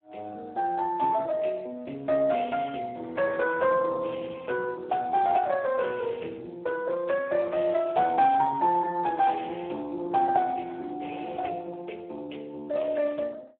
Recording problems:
telephone audio; 240 Hz to 2.9 kHz, Speex

